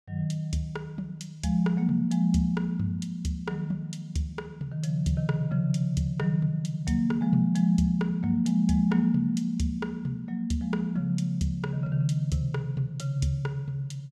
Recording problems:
none

